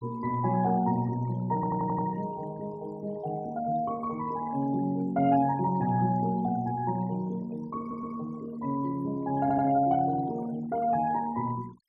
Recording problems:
denoising artefacts; signal-to-artefact ratio 21 dB
stutter; at 1.5 s, at 8 s and at 9.5 s

